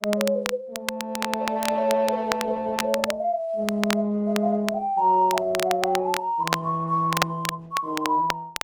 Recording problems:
codec artefacts; Opus, then Opus, log-spectral distance 2 dB
crackle; vinyl, SNR 7 dB

